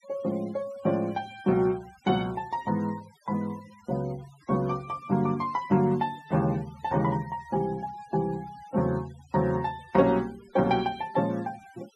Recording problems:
noise reduction artefacts; signal-to-artefact ratio 23 dB

